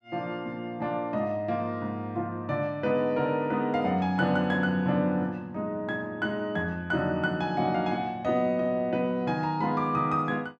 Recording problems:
none

